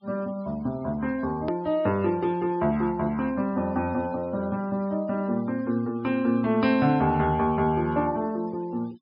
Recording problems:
low-pass filter; nothing above 5.5 kHz
noise reduction artefacts; signal-to-artefact ratio 26 dB
hard cut with a click; at 1.5 s

